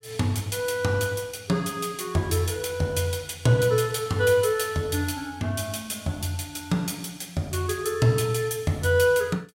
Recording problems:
none

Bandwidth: 16 kHz